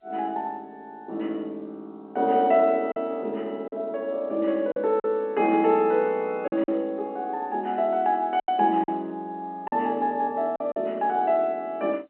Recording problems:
phone line; 240 Hz to 3.4 kHz, G.711
lost packets; 4% of the sound replaced, filled with silence

